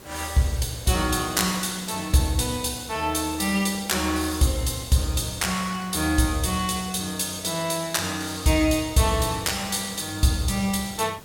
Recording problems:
background hiss; slope -4 dB per octave, SNR 21 dB

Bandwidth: 17 kHz